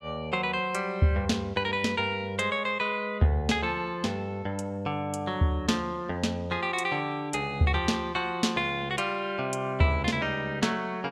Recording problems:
none

